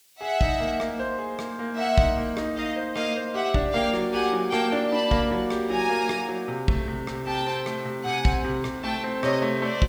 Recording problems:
background hiss; SNR 28 dB

